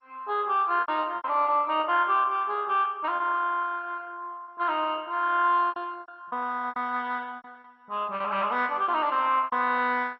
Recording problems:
lossy compression; MP2, log-spectral distance 3 dB, nothing above 4.9 kHz
packet loss; 8% of the sound replaced, filled with repeated pitch periods

